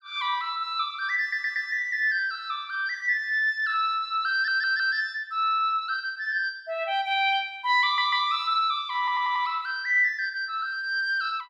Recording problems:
audio stuttering; 4 times, first at 1 s

